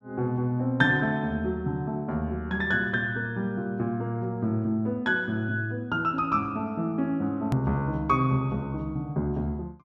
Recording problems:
edit click; at 7.5 s

